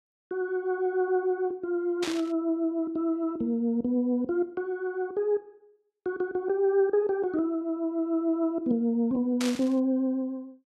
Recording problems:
static burst; at 2 s and at 9.5 s; peak -2 dB vs average level

